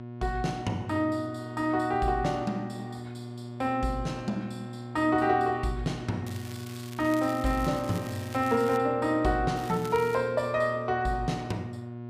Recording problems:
mains hum; 60 Hz, harmonics up to 1.1 kHz, SNR 11 dB
crackle; from 6.5 to 9 s and at 9.5 s; loose cable, SNR 18 dB

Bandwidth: 15 kHz